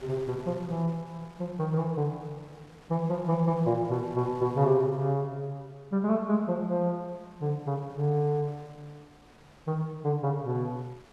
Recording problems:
wind noise; below 2.1 kHz, SNR 25 dB

